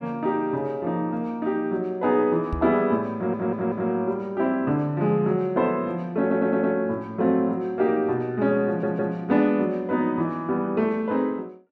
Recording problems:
microphone bump; at 2.5 s; peak -2 dB vs average level
stutter; at 3 s, at 6 s and at 8.5 s

